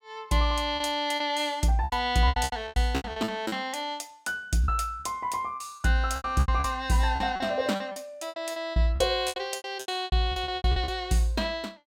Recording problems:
lost packets; 16% of the sound replaced, filled with repeated pitch periods

